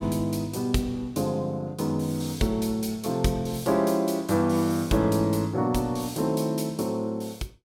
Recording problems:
none

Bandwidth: 17 kHz